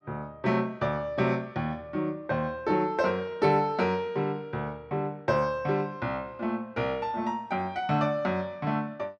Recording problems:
none

